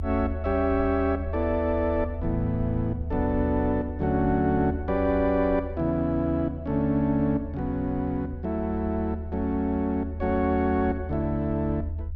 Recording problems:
low-frequency rumble; below 80 Hz, strongest tone 78 Hz, SNR 8 dB

